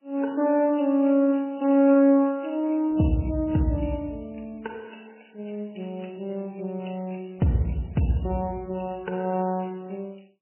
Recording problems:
lossy compression; MP3, then MP3, log-spectral distance 6 dB, nothing above 2.9 kHz

